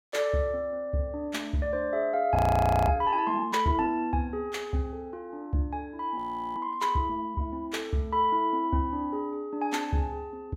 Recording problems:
audio freezing; at 2.5 s for 0.5 s and at 6 s

